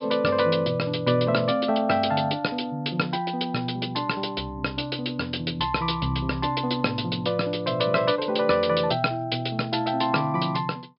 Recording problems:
low-pass filter; nothing above 5.5 kHz

